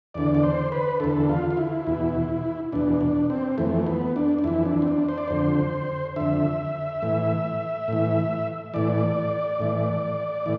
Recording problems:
none

